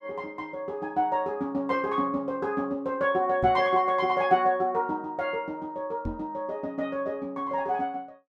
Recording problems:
microphone bump; at 3.5 s and at 6 s; peak -2 dB vs average level

